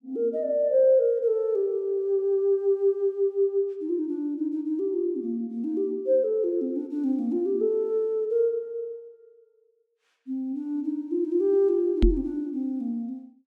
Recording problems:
microphone bump; at 12 s; peak +6 dB vs average level

